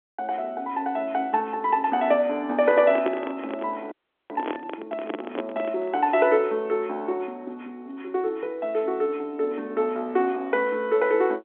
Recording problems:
telephone audio; 260 Hz to 3.5 kHz, G.711
microphone handling noise; from 2.5 to 6 s; peak 0 dB vs average level
audio freezing; at 4 s

